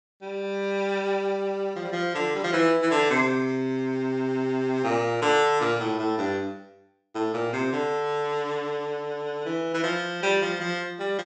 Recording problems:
treble cut off; nothing above 8 kHz

